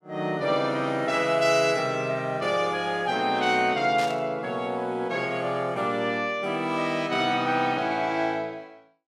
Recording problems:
burst of static; at 4 s; peak -7 dB vs average level

